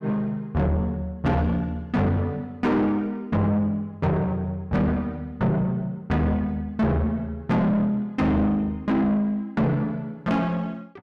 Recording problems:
distorted audio; soft clipping, signal-to-distortion ratio 6 dB

